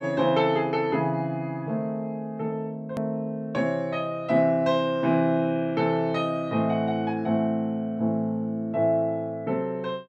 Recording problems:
click at an edit; at 3 s

